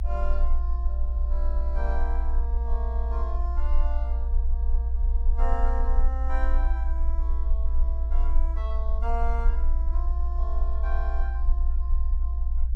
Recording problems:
low-frequency rumble; below 58 Hz, strongest tone 22 Hz, SNR -11 dB

